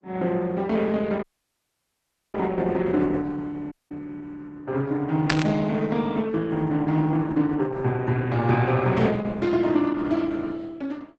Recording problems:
lossy compression; Opus, log-spectral distance 3 dB, nothing above 7.6 kHz
audio cutting out; at 1 s for 1 s and at 3.5 s
static burst; at 5.5 s; peak +3 dB vs average level

